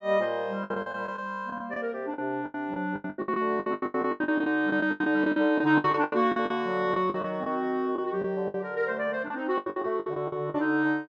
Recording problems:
packet loss; 18% of the sound replaced, filled with the last packet

